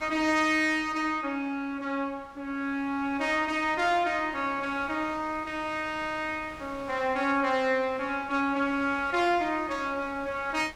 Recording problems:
wind on the microphone; below 2.3 kHz, SNR 22 dB

